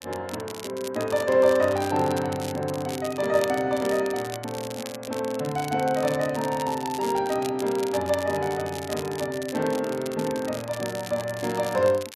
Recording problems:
crackling; vinyl, SNR 14 dB

